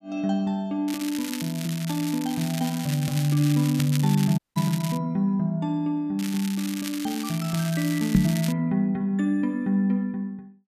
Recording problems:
crackle; from 1 to 5 s and from 6 to 8.5 s; loose cable, SNR 11 dB
audio cutting out; at 4.5 s
microphone thump; at 8 s; peak +9 dB vs average level

